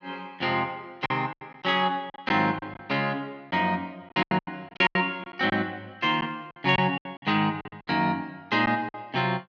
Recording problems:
lost packets; 11% of the sound replaced, filled with silence

